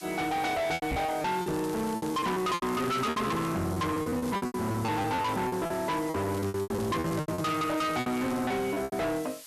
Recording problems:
distortion; hard clipping, signal-to-distortion ratio 6 dB
hiss; slope +3 dB per octave, SNR 16 dB
packet loss; 16% of the sound replaced, filled with repeated pitch periods
knock on the microphone; at 1 s; peak 0 dB vs average level
crackle; from 1.5 to 3.5 s, at 4.5 s and from 6.5 to 8.5 s; loose cable, SNR 19 dB

